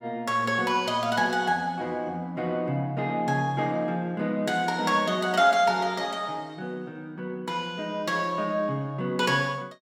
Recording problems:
none

